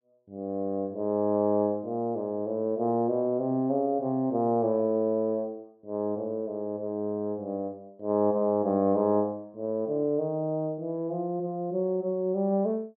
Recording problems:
none

